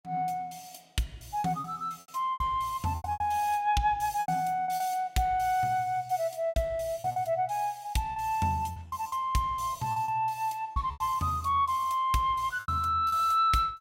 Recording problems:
packet loss; 9% of the sound replaced, filled with repeated pitch periods

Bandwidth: 16 kHz